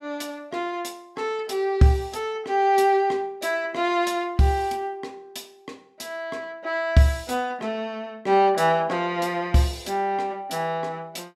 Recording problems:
none

